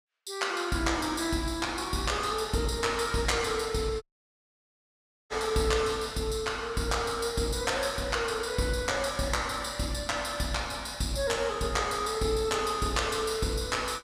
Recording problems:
dropout; at 4 s for 1.5 s

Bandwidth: 15.5 kHz